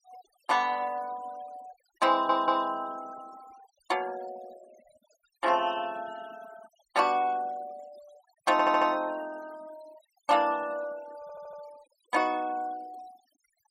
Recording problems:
denoising artefacts; signal-to-artefact ratio 21 dB
stutter; at 2 s, at 8.5 s and at 11 s

